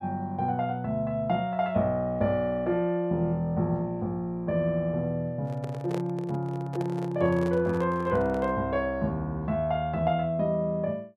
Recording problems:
microphone handling noise; from 5.5 to 8.5 s; peak -3 dB vs average level

